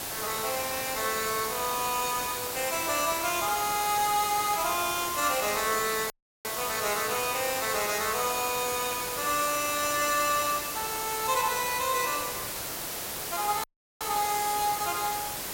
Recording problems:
hiss; slope -2 dB per octave, SNR 3 dB
dropout; at 6 s and at 14 s

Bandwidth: 16.5 kHz